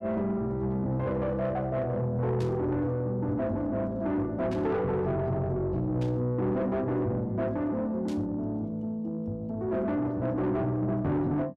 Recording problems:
distorted audio; soft clipping, signal-to-distortion ratio 11 dB
burst of static; 4 times, first at 2.5 s; peak -12 dB vs average level

